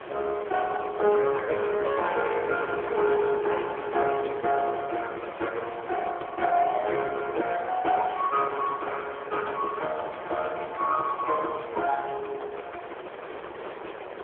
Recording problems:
phone line; 300 Hz to 3.4 kHz, AMR-NB
wind on the microphone; below 1.3 kHz, SNR 12 dB

